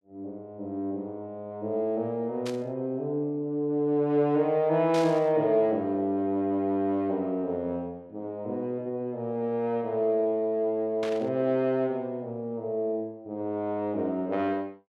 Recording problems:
static burst; at 2.5 s, at 5 s and at 11 s; peak -6 dB vs average level

